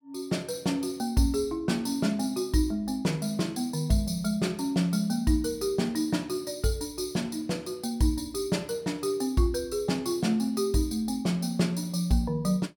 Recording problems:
none

